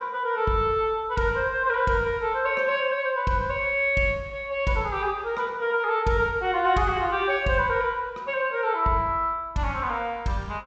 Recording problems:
treble missing; nothing above 8 kHz

